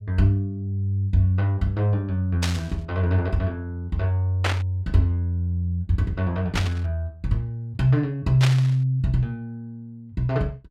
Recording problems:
burst of static; 4 times, first at 2.5 s; peak +3 dB vs average level

